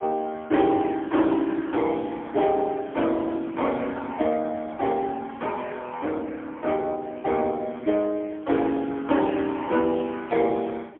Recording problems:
telephone audio; 240 Hz to 3.4 kHz, AMR-NB, then MP3

